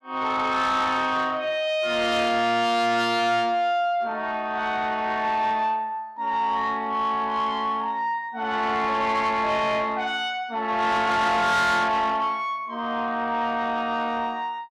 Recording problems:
distorted audio; soft clipping, signal-to-distortion ratio 11 dB

